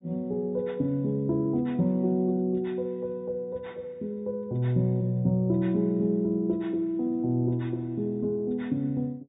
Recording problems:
treble cut off; nothing above 4 kHz

